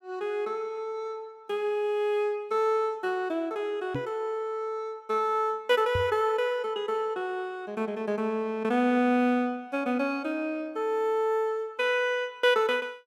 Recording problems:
microphone thump; at 4 s and at 6 s; peak -1 dB vs average level

